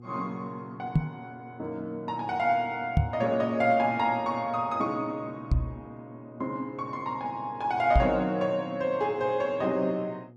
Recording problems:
hum; 60 Hz, harmonics up to 840 Hz, SNR 20 dB
microphone bump; 4 times, first at 1 s; peak +9 dB vs average level

